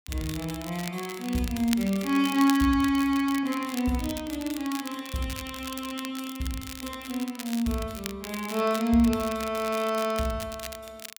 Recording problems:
crackle; vinyl, SNR 12 dB

